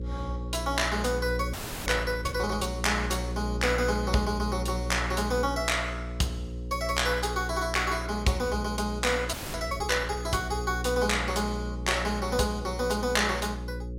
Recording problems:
hum; 60 Hz, harmonics up to 540 Hz, SNR 7 dB
audio freezing; at 1.5 s and at 9.5 s

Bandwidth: 16 kHz